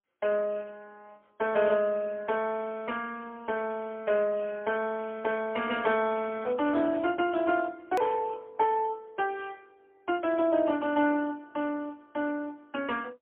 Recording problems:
telephone audio; 240 Hz to 3.3 kHz, AMR-NB, then MP3
click at an edit; at 8 s

